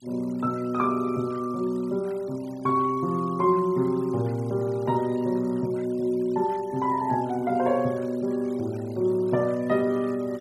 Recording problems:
denoising artefacts; signal-to-artefact ratio 25 dB

